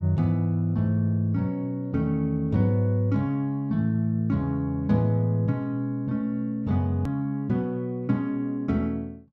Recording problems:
click at an edit; at 7 s

